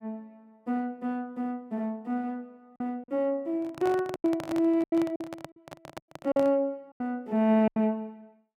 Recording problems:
lost packets; 7% of the sound replaced, filled with silence
microphone handling noise; from 3.5 to 6.5 s; peak -5 dB vs average level

